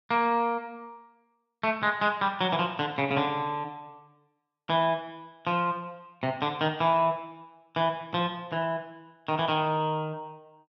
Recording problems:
none

